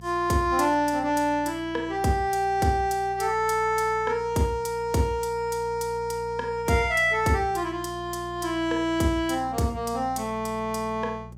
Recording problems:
hum; 60 Hz, harmonics up to 600 Hz, SNR 18 dB

